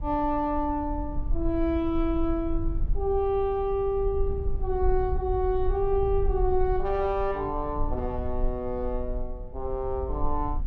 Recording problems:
low-frequency rumble; below 52 Hz, strongest tone 18 Hz, SNR 6 dB

